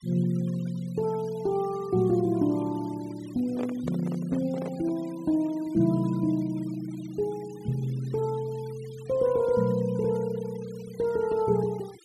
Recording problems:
noise reduction artefacts; signal-to-artefact ratio 23 dB
microphone handling noise; from 3.5 to 5 s; peak -4 dB vs average level

